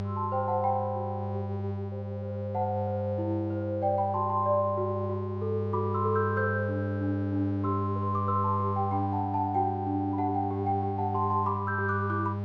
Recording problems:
mains hum; 50 Hz, harmonics up to 800 Hz, SNR 4 dB

